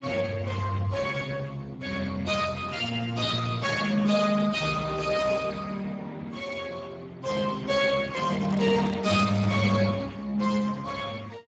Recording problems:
lossy compression; Speex, log-spectral distance 5 dB, nothing above 7.3 kHz
microphone handling noise; from 8 to 9.5 s; peak -7 dB vs average level

